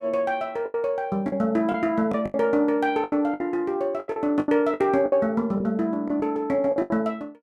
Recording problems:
lost packets; 12% of the sound replaced, filled with the last packet

